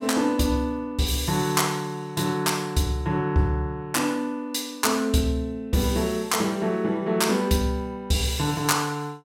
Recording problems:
none

